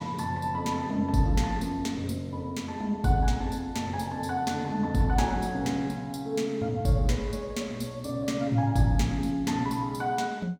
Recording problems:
none

